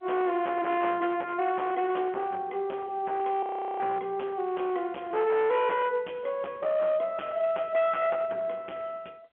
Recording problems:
phone line; 320 Hz to 3.4 kHz, G.711
distorted audio; hard clipping, signal-to-distortion ratio 11 dB
audio freezing; at 3.5 s

